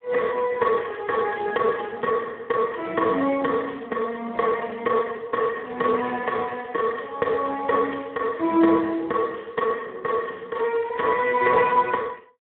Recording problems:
phone line; 260 Hz to 3.4 kHz, Speex

